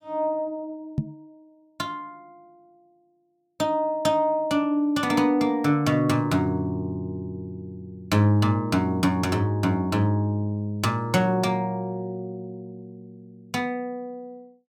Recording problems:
microphone bump; at 1 s; peak +3 dB vs average level

